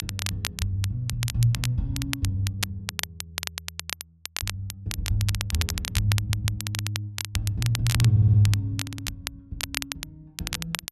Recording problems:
crackle; vinyl, SNR 6 dB
stutter; at 6 s, at 8 s and at 9 s

